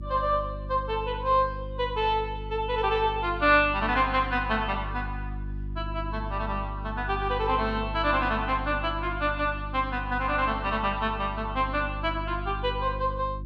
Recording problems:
electrical hum; 50 Hz, harmonics up to 350 Hz, SNR 9 dB

